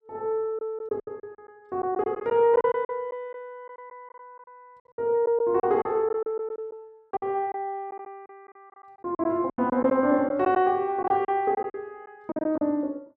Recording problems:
packet loss; 11% of the sound replaced, filled with silence

